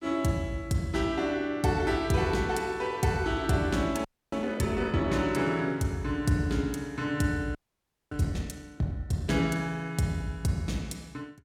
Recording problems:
frozen audio; at 4 s and at 7.5 s for 0.5 s

